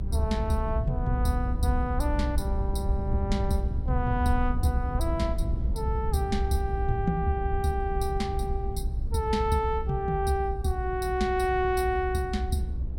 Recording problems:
rumble; below 78 Hz, SNR 1 dB

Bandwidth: 16.5 kHz